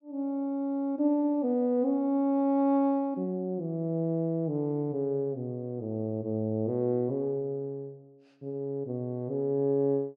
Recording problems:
none

